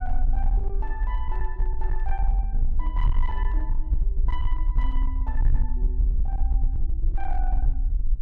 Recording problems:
distorted audio; hard clipping, uneven, signal-to-distortion ratio 10 dB
rumble; below 46 Hz, strongest tone 22 Hz, SNR -12 dB

